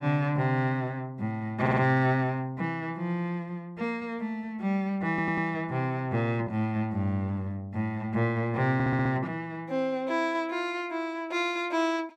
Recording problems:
audio stuttering; at 1.5 s, at 5 s and at 8.5 s

